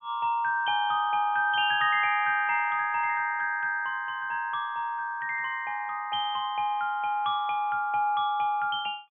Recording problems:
treble cut off; nothing above 3.4 kHz

